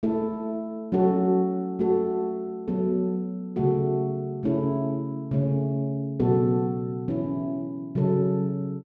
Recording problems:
none

